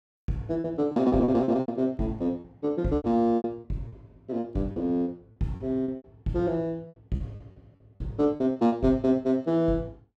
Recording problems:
packet loss; 13% of the sound replaced, filled with repeated pitch periods

